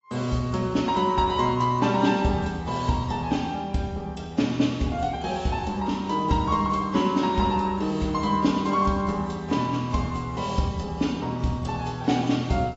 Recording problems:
codec artefacts; AAC, log-spectral distance 3 dB, nothing above 7.6 kHz

